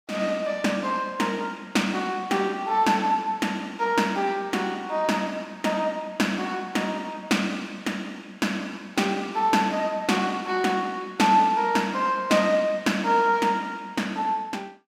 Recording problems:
none

